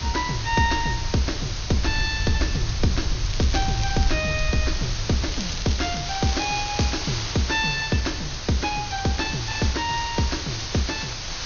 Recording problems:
treble cut off; nothing above 6.6 kHz
hiss; slope +1 dB per octave, SNR 5 dB
low-frequency rumble; below 84 Hz, SNR 7 dB
crackling; at 3.5 s and from 5.5 to 7 s; loose cable, SNR 10 dB

